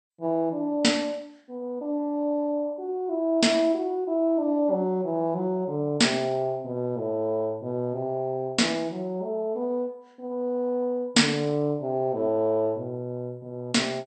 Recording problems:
codec artefacts; MP2, log-spectral distance 2 dB, nothing above 8.5 kHz

